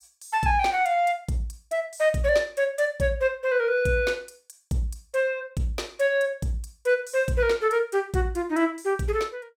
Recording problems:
none

